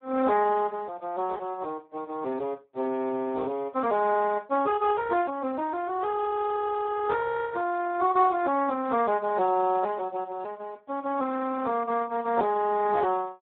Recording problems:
phone line; 240 Hz to 2.3 kHz, Speex

